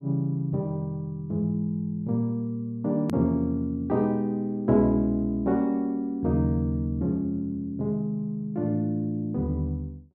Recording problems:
click at an edit; at 3 s

